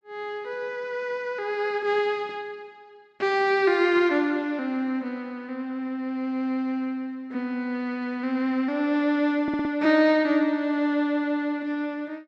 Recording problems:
audio stuttering; at 9.5 s

